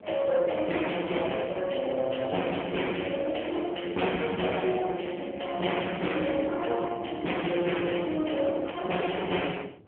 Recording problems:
telephone audio; 220 Hz to 3.1 kHz, AMR-NB
distortion; soft clipping, signal-to-distortion ratio 14 dB
wind on the microphone; below 790 Hz, SNR 16 dB

